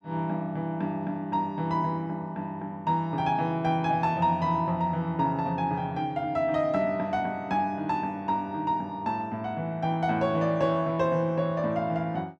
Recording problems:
none

